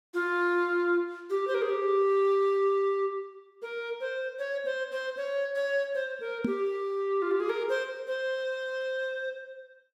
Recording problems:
microphone thump; at 6.5 s; peak +4 dB vs average level

